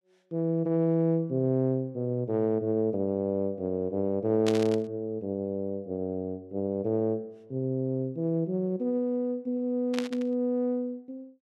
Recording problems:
burst of static; at 4.5 s and at 10 s; peak -1 dB vs average level

